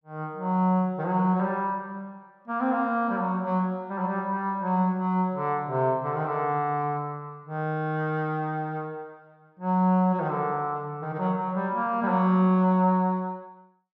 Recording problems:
none

